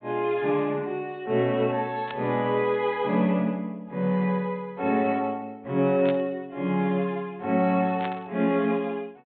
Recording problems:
treble cut off; nothing above 4 kHz
burst of static; at 2 s, at 6 s and at 8 s; peak -6 dB vs average level

